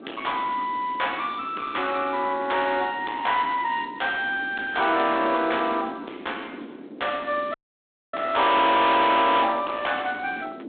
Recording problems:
telephone audio; 240 Hz to 3.7 kHz, G.726
distortion; hard clipping, uneven, signal-to-distortion ratio 7 dB
wind on the microphone; below 770 Hz, SNR 17 dB
dropout; at 7.5 s for 0.5 s

